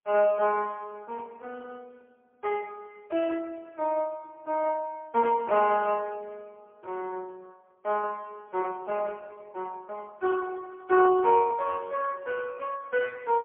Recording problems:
phone line; 260 Hz to 3.3 kHz, AMR-NB, then MP3

